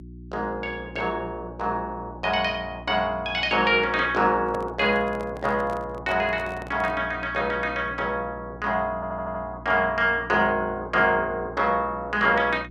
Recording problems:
hum; 60 Hz, harmonics up to 360 Hz, SNR 18 dB
handling noise; from 4.5 to 7 s; peak -8 dB vs average level
stutter; at 9 s

